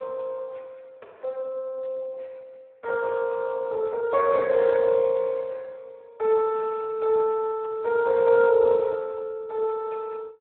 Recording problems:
phone line; 300 Hz to 2.6 kHz, Speex

